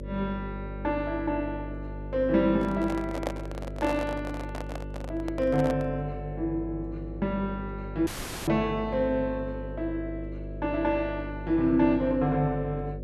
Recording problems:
hum; 50 Hz, harmonics up to 600 Hz, SNR 9 dB
microphone handling noise; from 2.5 to 6 s; peak +2 dB vs average level
audio cutting out; at 8 s

